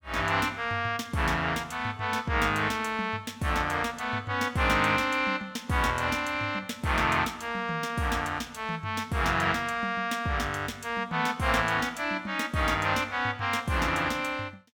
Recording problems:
none

